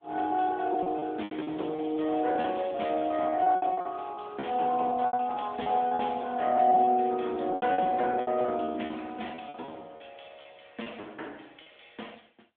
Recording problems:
phone line; 240 Hz to 3.5 kHz, AMR-NB
packet loss; 15% of the sound replaced, filled with repeated pitch periods
crackle; from 1.5 to 3.5 s; loose cable, SNR 27 dB

